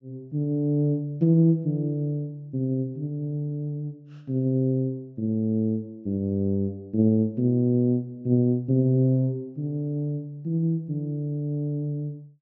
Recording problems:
treble cut off; nothing above 8 kHz

